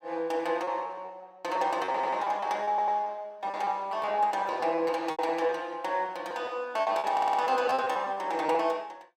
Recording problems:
lost packets; 13% of the sound replaced, filled with repeated pitch periods
audio stuttering; at 2 s, at 2.5 s and at 7 s

